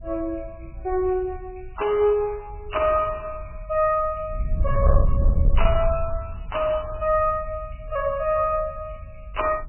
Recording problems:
lossy codec; MP3, log-spectral distance 8 dB, nothing above 3 kHz
distorted audio; hard clipping, signal-to-distortion ratio 10 dB
wind on the microphone; below 72 Hz, SNR 3 dB

